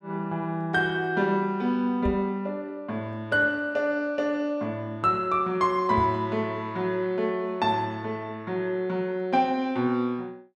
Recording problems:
knock on the microphone; at 2 s and at 6 s; peak -2 dB vs average level

